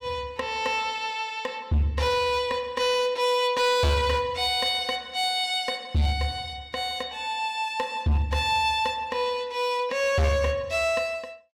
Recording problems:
distortion; hard clipping, uneven, signal-to-distortion ratio 10 dB

